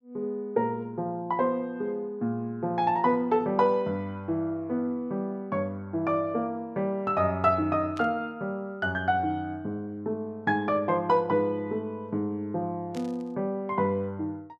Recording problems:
static burst; at 8 s and at 13 s; peak -13 dB vs average level

